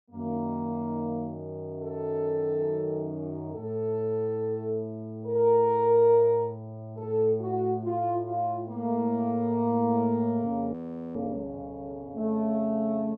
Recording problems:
audio freezing; at 11 s

